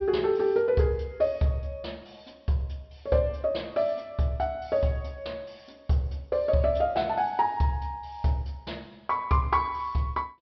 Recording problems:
low-pass filter; nothing above 5.5 kHz

